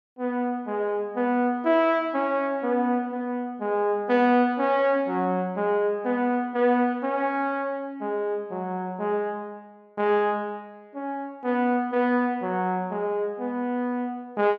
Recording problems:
none

